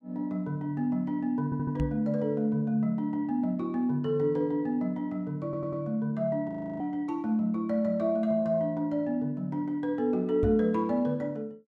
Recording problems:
stutter; at 1.5 s and at 5.5 s
knock on the microphone; at 2 s and at 10 s; peak +1 dB vs average level
frozen audio; at 6.5 s

